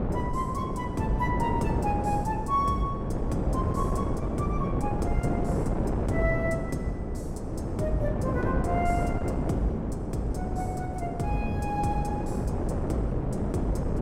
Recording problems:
wind on the microphone; below 400 Hz, SNR -2 dB

